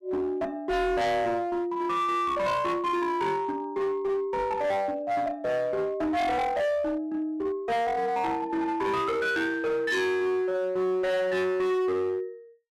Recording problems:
distortion; hard clipping, uneven, signal-to-distortion ratio 7 dB

